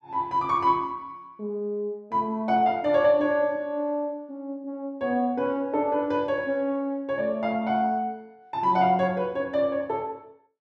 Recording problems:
none

